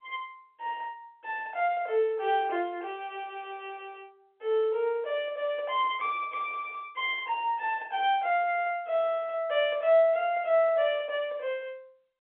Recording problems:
phone line; 280 Hz to 3.4 kHz, G.711

